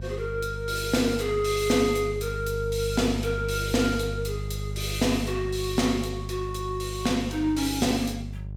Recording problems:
electrical hum; 50 Hz, harmonics up to 400 Hz, SNR 8 dB

